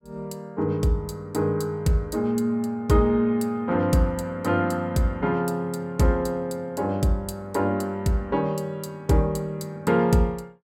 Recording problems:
none

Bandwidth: 17 kHz